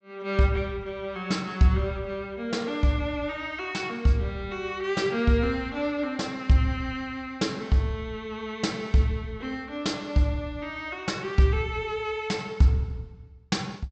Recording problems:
treble cut off; nothing above 8 kHz

